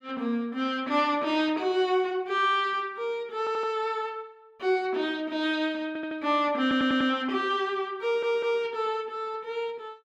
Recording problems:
stutter; 4 times, first at 3.5 s

